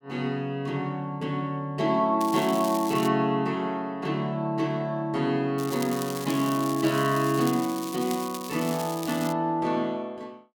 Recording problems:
crackle; at 2 s and from 5.5 to 9.5 s; loose cable, SNR 12 dB

